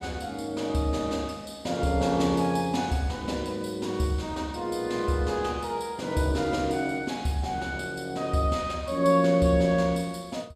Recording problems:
none

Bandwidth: 15.5 kHz